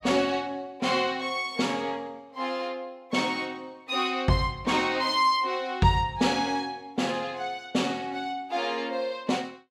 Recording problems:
none

